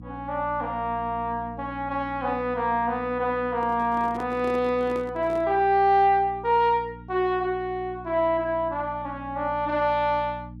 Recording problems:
electrical hum; 60 Hz, harmonics up to 300 Hz, SNR 18 dB
microphone handling noise; from 3.5 to 5.5 s; peak -9 dB vs average level

